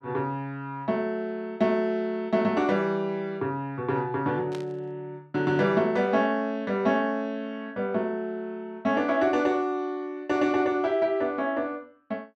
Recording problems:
static burst; at 4.5 s; peak -11 dB vs average level

